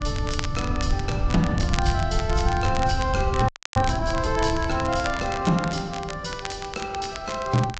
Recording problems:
low-pass filter; nothing above 7.3 kHz
codec artefacts; AAC, log-spectral distance 3 dB
rumble; below 110 Hz, SNR 3 dB
crackling; vinyl, SNR 11 dB
frozen audio; at 3.5 s

